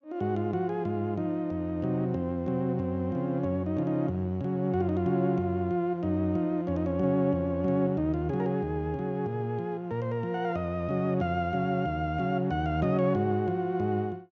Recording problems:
none

